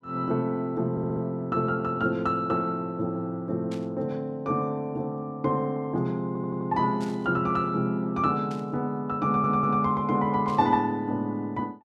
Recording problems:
stutter; at 1 s, at 6.5 s and at 9.5 s
static burst; 4 times, first at 3.5 s; peak -13 dB vs average level

